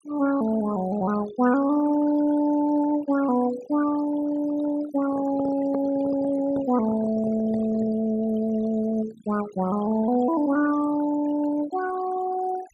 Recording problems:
denoising artefacts; signal-to-artefact ratio 17 dB
handling noise; from 5 to 8 s; peak -5 dB vs average level

